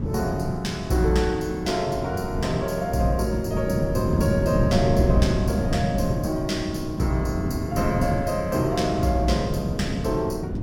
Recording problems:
wind on the microphone; below 240 Hz, SNR 2 dB

